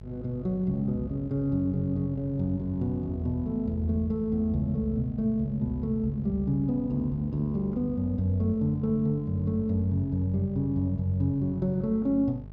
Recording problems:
electrical hum; 50 Hz, harmonics up to 650 Hz, SNR 15 dB

